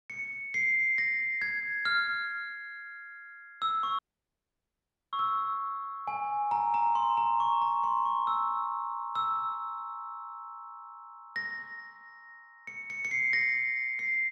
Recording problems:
dropout; at 4 s for 1 s

